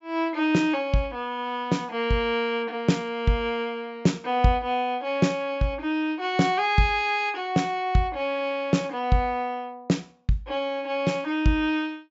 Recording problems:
treble missing; nothing above 8 kHz

